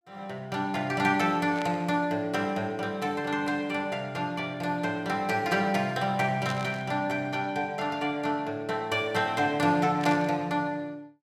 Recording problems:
static burst; at 1.5 s, at 6.5 s and at 10 s; peak -6 dB vs average level

